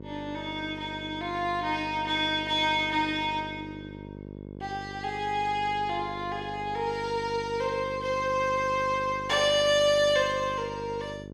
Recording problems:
hum; 50 Hz, harmonics up to 950 Hz, SNR 14 dB

